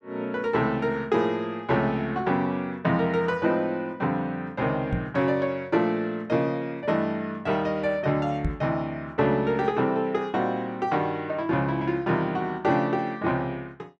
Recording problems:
knock on the microphone; at 5 s and at 8.5 s; peak +2 dB vs average level

